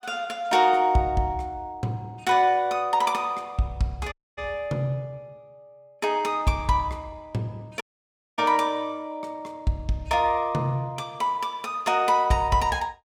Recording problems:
audio cutting out; at 4 s and at 8 s for 0.5 s

